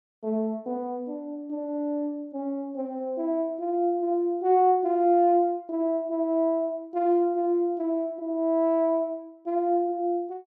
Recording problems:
none

